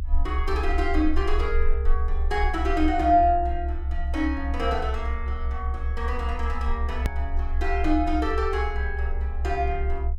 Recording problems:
low-frequency rumble; below 68 Hz, strongest tone 24 Hz, SNR 2 dB
click at an edit; at 7 s

